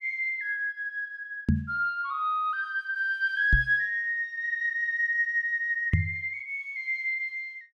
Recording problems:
microphone bump; at 1.5 s, at 3.5 s and at 6 s; peak +8 dB vs average level

